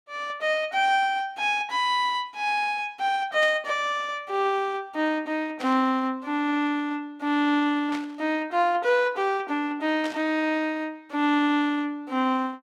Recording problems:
static burst; 4 times, first at 3.5 s; peak -8 dB vs average level

